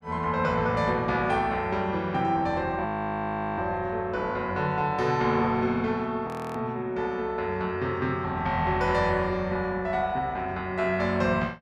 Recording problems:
audio freezing; at 3 s for 0.5 s and at 6.5 s

